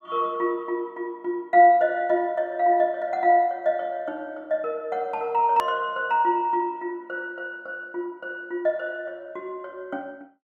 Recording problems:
hard cut with a click; at 5.5 s

